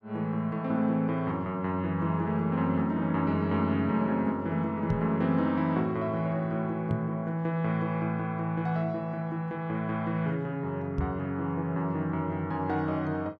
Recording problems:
knock on the microphone; at 5 s, at 7 s and at 11 s; peak +4 dB vs average level

